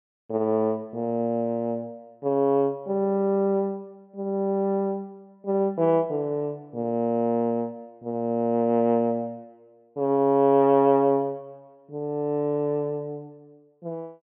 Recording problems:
treble missing; nothing above 3.4 kHz

